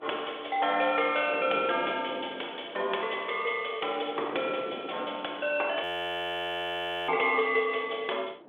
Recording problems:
phone line; 320 Hz to 3.5 kHz, G.726
wind noise; below 650 Hz, SNR 16 dB
frozen audio; at 6 s for 1.5 s

